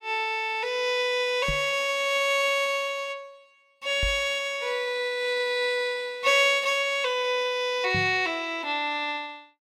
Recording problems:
microphone thump; at 1.5 s, at 4 s and at 8 s; peak -3 dB vs average level

